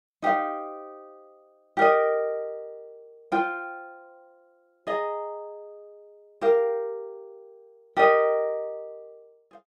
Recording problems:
none

